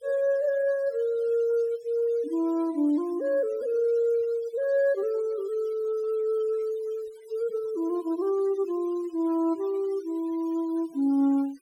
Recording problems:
denoising artefacts; signal-to-artefact ratio 26 dB

